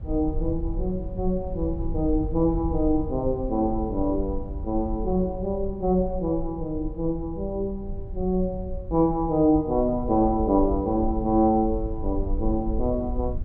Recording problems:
low-frequency rumble; below 72 Hz, SNR 9 dB

